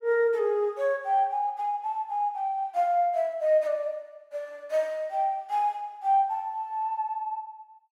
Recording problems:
none

